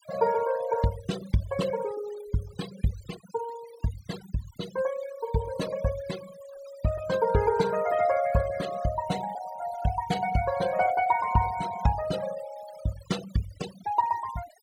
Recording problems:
denoising artefacts; signal-to-artefact ratio 14 dB

